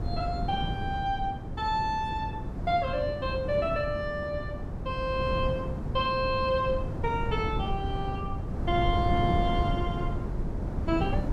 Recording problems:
wind noise; below 210 Hz, SNR 3 dB

